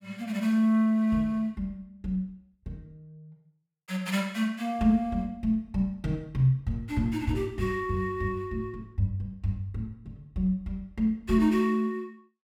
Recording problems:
none

